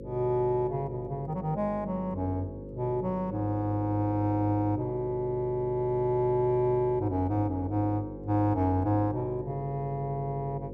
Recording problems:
hum; 50 Hz, harmonics up to 550 Hz, SNR 12 dB

